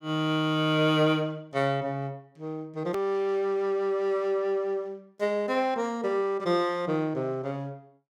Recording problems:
edit click; at 3 s

